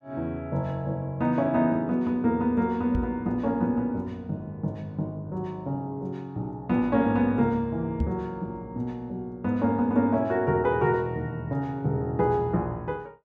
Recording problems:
microphone bump; at 3 s and at 8 s; peak +3 dB vs average level

